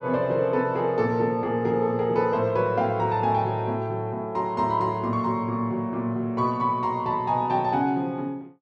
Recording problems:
none

